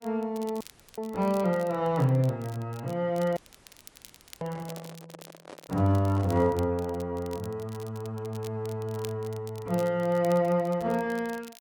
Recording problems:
lossy codec; AAC, log-spectral distance 2 dB
crackle; vinyl, SNR 22 dB
audio cutting out; at 0.5 s and at 3.5 s for 1 s
microphone handling noise; from 4.5 to 6.5 s; peak -10 dB vs average level

